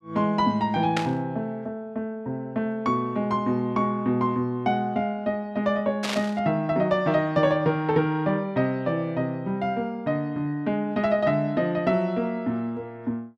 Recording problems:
static burst; at 1 s and at 6 s; peak +2 dB vs average level

